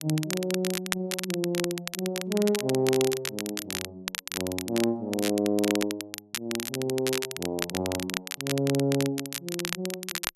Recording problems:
crackling; vinyl, SNR 4 dB

